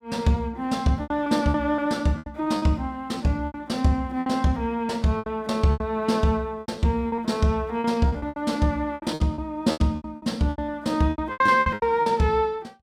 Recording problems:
lost packets; 15% of the sound replaced, filled with repeated pitch periods

